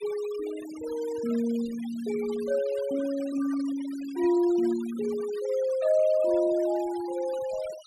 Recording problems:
noise reduction artefacts; signal-to-artefact ratio 18 dB

